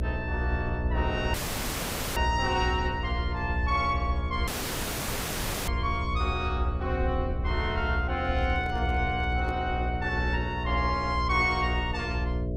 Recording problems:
electrical hum; 60 Hz, harmonics up to 660 Hz, SNR 4 dB
rumble; below 76 Hz, SNR 4 dB
audio cutting out; at 1.5 s for 1 s and at 4.5 s for 1 s
microphone handling noise; from 8 to 9.5 s; peak -8 dB vs average level

